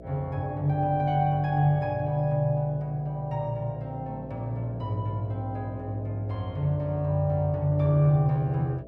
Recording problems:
hum; 60 Hz, harmonics up to 660 Hz, SNR 16 dB

